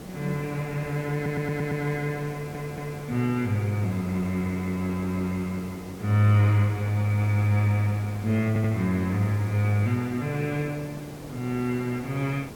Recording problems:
background hiss; SNR 15 dB
stutter; at 1 s, at 2.5 s and at 8.5 s

